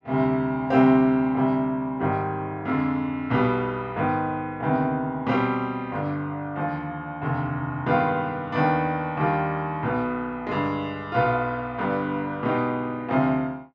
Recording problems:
none

